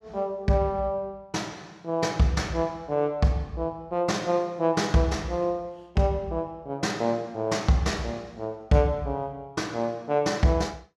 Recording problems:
none

